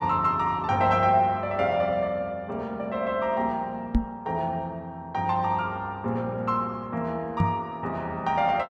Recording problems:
microphone bump; at 4 s and at 7.5 s; peak +7 dB vs average level

